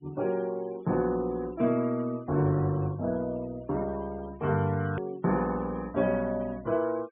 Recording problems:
treble cut off; nothing above 3.4 kHz
denoising artefacts; signal-to-artefact ratio 23 dB
click at an edit; at 5 s

